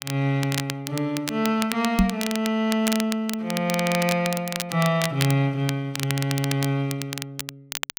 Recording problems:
crackling; vinyl, SNR 8 dB
microphone bump; at 2 s; peak +8 dB vs average level

